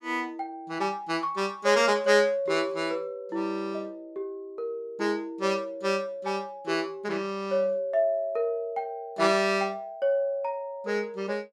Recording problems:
none

